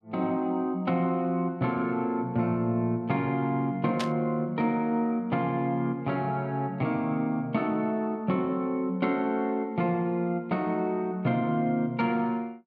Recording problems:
static burst; at 4 s; peak -1 dB vs average level

